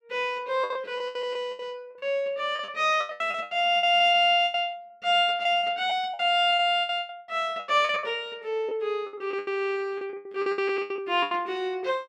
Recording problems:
packet loss; 17% of the sound replaced, filled with the last packet

